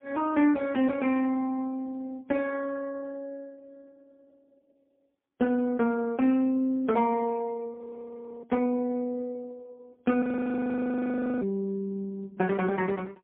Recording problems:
phone line; 130 Hz to 3.3 kHz, AMR-NB, then MP3
audio freezing; at 8 s for 0.5 s and at 10 s for 1 s

